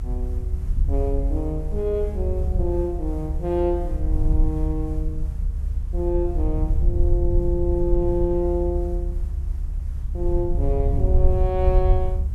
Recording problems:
background hiss; slope -6 dB per octave, SNR 27 dB
rumble; below 70 Hz, SNR -1 dB

